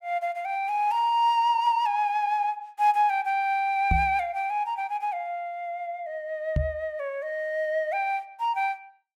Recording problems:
microphone thump; at 4 s and at 6.5 s; peak +4 dB vs average level

